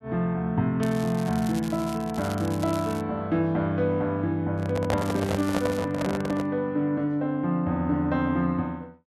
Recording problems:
crackle; from 1 to 3 s and at 5 s; loose cable, SNR 17 dB
handling noise; from 4.5 to 6.5 s; peak +3 dB vs average level

